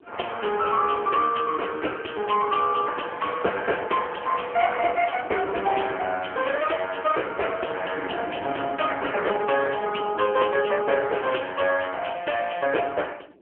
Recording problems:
phone line; 280 Hz to 3.1 kHz, AMR-NB
wind noise; below 440 Hz, SNR 18 dB

